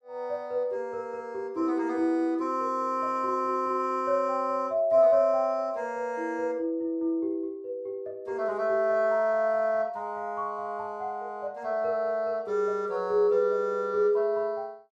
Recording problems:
none

